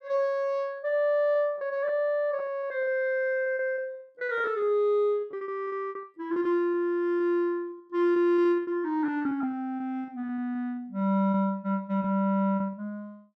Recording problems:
packet loss; 13% of the sound replaced, filled with repeated pitch periods

